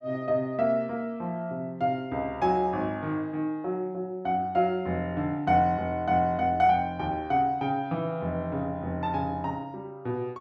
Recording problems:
none

